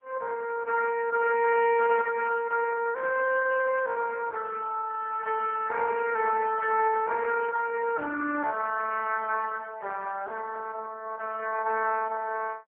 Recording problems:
phone line; 240 Hz to 2.6 kHz, AMR-NB

